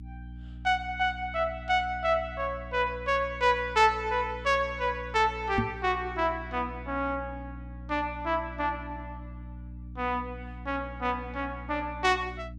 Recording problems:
hum; 60 Hz, harmonics up to 300 Hz, SNR 14 dB
knock on the microphone; at 5.5 s; peak +4 dB vs average level

